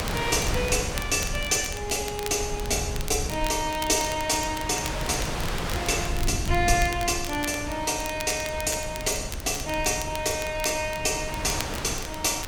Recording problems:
low-frequency rumble; below 110 Hz, SNR 10 dB
wind on the microphone; below 2.2 kHz, SNR 9 dB
crackling; vinyl, SNR 13 dB

